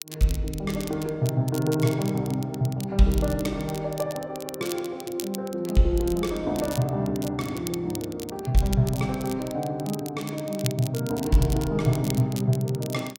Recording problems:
crackle; vinyl, SNR 14 dB

